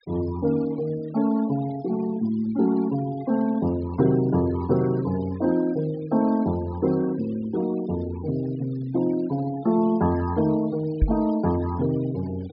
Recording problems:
low-pass filter; nothing above 5.5 kHz
denoising artefacts; signal-to-artefact ratio 22 dB
microphone bump; at 11 s; peak +6 dB vs average level

